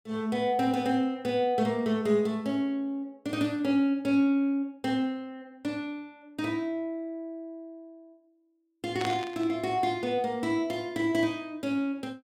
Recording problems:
burst of static; at 9 s; peak -2 dB vs average level

